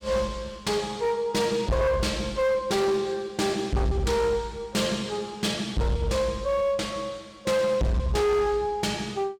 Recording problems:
distorted audio; hard clipping, signal-to-distortion ratio 7 dB

